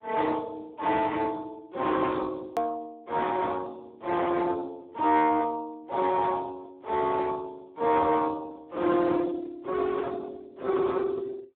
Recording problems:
phone line; 280 Hz to 2 kHz, Speex
distortion; soft clipping, signal-to-distortion ratio 13 dB
hard cut with a click; at 2.5 s

